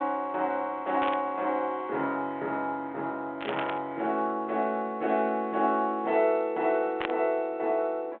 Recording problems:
telephone audio; 300 Hz to 3.6 kHz, G.726
burst of static; at 1 s, at 3.5 s and at 7 s; peak -2 dB vs average level

